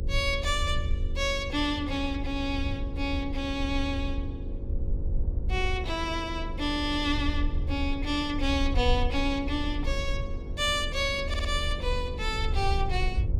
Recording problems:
electrical hum; 50 Hz, harmonics up to 550 Hz, SNR 13 dB
low-frequency rumble; below 74 Hz, strongest tone 30 Hz, SNR 4 dB
wind on the microphone; below 360 Hz, SNR 17 dB
audio stuttering; at 11 s

